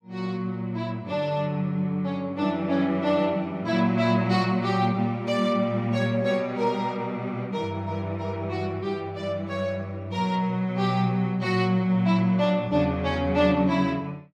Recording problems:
none

